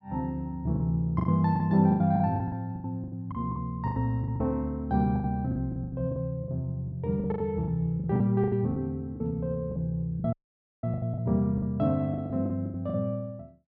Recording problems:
packet loss; 15% of the sound replaced, filled with the last packet
audio cutting out; at 10 s for 0.5 s

